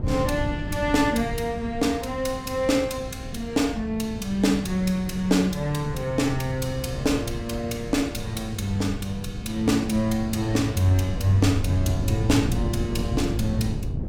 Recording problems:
wind on the microphone; below 170 Hz, SNR 8 dB

